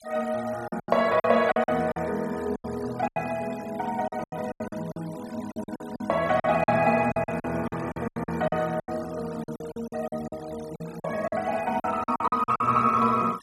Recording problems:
denoising artefacts; signal-to-artefact ratio 21 dB
packet loss; 15% of the sound replaced, filled with silence

